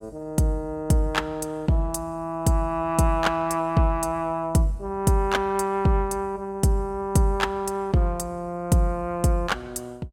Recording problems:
none

